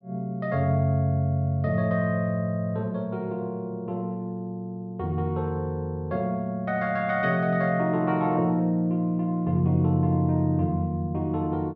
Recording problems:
none

